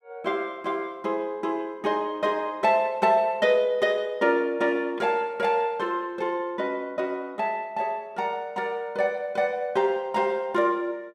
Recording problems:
none

